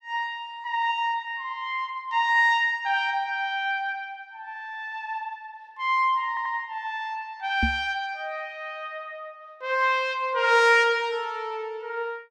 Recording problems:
stutter; at 6.5 s
knock on the microphone; at 7.5 s; peak +2 dB vs average level

